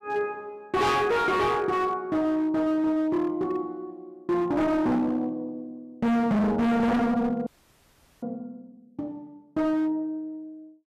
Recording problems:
distortion; hard clipping, signal-to-distortion ratio 6 dB
frozen audio; at 7.5 s for 1 s

